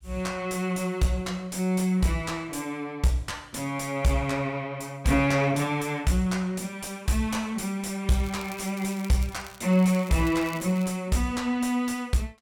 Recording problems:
distorted audio; soft clipping, signal-to-distortion ratio 11 dB
crackle; from 8 to 11 s; loose cable, SNR 20 dB

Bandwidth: 17 kHz